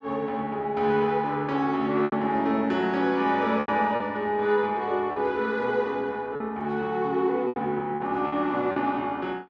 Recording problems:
lost packets; 5% of the sound replaced, filled with repeated pitch periods

